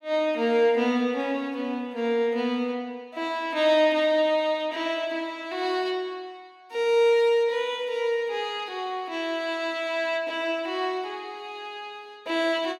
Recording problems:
none

